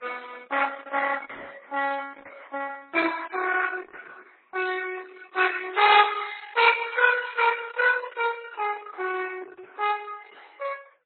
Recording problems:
lossy compression; Opus, then MP3, log-spectral distance 6 dB, nothing above 4 kHz

